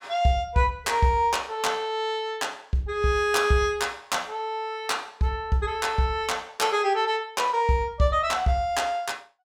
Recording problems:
none

